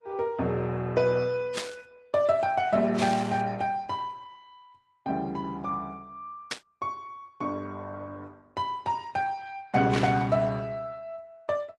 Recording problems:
codec artefacts; AAC, then Opus, log-spectral distance 2 dB, nothing above 9.8 kHz
burst of static; 4 times, first at 1.5 s; peak 0 dB vs average level

